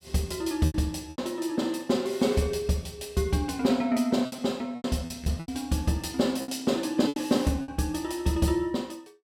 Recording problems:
packet loss; 7% of the sound replaced, filled with repeated pitch periods

